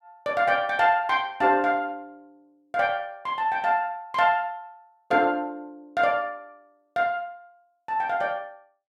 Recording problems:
none

